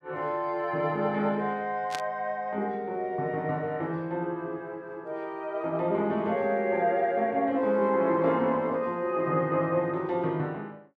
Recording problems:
static burst; at 2 s; peak -4 dB vs average level

